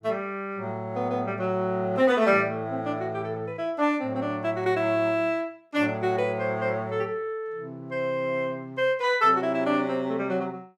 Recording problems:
none

